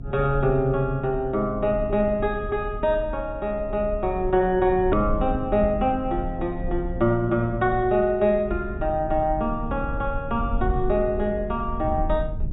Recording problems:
treble cut off; nothing above 4 kHz
rumble; below 78 Hz, SNR 10 dB
edit click; at 5 s

